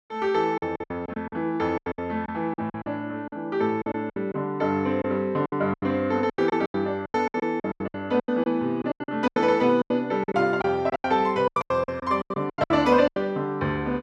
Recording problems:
lost packets; 18% of the sound replaced, filled with silence

